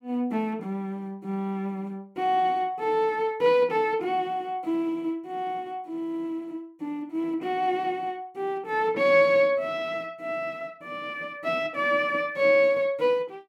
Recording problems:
none

